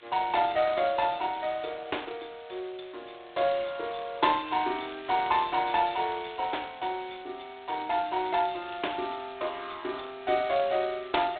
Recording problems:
telephone audio; 300 Hz to 3.9 kHz, G.726
hiss; SNR 26 dB
crackling; from 4.5 to 7 s and at 8.5 s; loose cable, SNR 23 dB

